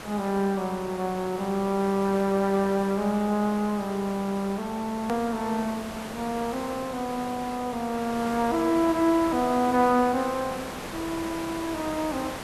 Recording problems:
hiss; slope -5 dB per octave, SNR 11 dB
click at an edit; at 5 s

